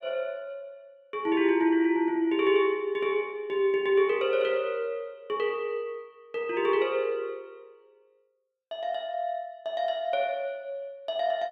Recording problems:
none

